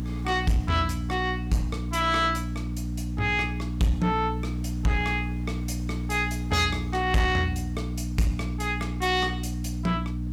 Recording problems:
distortion; soft clipping, signal-to-distortion ratio 11 dB
hum; 60 Hz, harmonics up to 300 Hz, SNR 4 dB
background hiss; slope -5 dB per octave, SNR 27 dB

